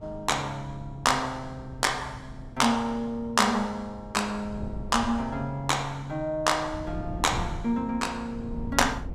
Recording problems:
wind noise; below 160 Hz, SNR 13 dB

